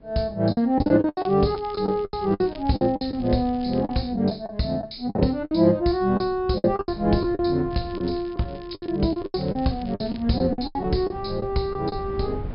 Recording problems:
treble missing; nothing above 5.5 kHz
wind noise; below 180 Hz, SNR 17 dB
packet loss; 14% of the sound replaced, filled with the last packet
crackling; from 1 to 4 s and from 7.5 to 10 s; loose cable, SNR 26 dB

